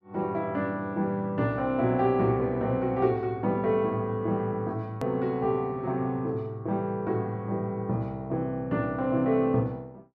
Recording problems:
click at an edit; at 5 s

